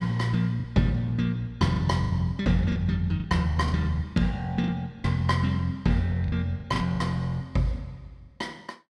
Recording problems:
packet loss; 7% of the sound replaced, filled with the last packet

